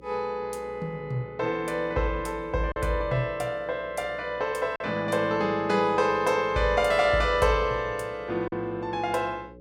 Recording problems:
hum; 60 Hz, harmonics up to 540 Hz, SNR 22 dB
packet loss; 1.3% of the sound replaced, filled with silence

